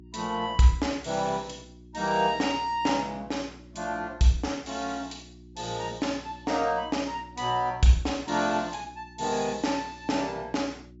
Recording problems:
low-pass filter; nothing above 8 kHz
electrical hum; 60 Hz, harmonics up to 360 Hz, SNR 22 dB

